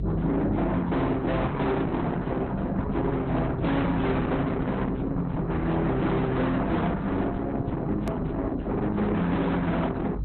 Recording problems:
lossy compression; Opus, then MP2, log-spectral distance 3 dB, nothing above 13.1 kHz
distorted audio; soft clipping, signal-to-distortion ratio 6 dB
electrical hum; 50 Hz, harmonics up to 400 Hz, SNR 6 dB
edit click; at 8 s

